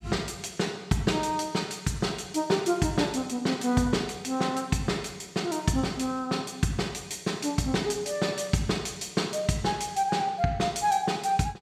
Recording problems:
none

